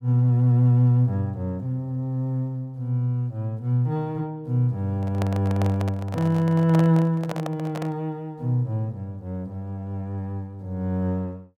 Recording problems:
handling noise; from 5 to 8 s; peak -3 dB vs average level

